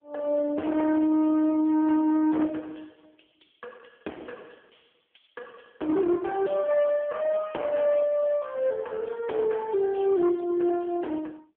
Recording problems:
telephone audio; 240 Hz to 3.3 kHz, AMR-NB
distortion; hard clipping, uneven, signal-to-distortion ratio 11 dB

